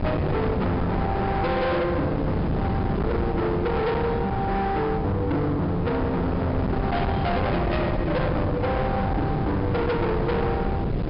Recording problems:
treble cut off; nothing above 5.5 kHz
distorted audio; hard clipping, signal-to-distortion ratio 6 dB
wind noise; below 440 Hz, SNR 2 dB

